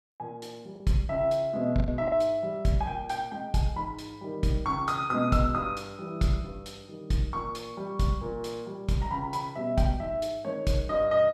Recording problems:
lost packets; 1.4% of the sound replaced, filled with the last packet

